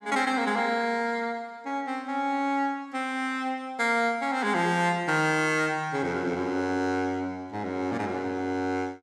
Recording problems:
none

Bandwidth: 15 kHz